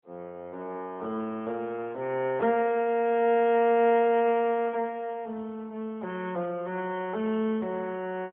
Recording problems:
phone line; 280 Hz to 3.3 kHz, AMR-NB, then MP3

